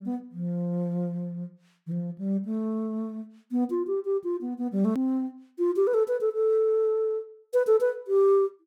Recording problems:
edit click; at 5 s

